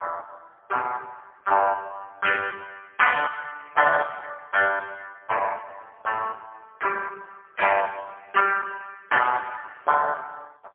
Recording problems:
telephone audio; 340 Hz to 3.3 kHz, AMR-NB, then MP3

